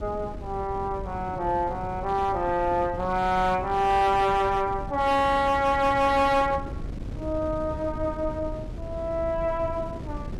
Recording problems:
distorted audio; hard clipping, signal-to-distortion ratio 12 dB
wind on the microphone; below 210 Hz, SNR 12 dB

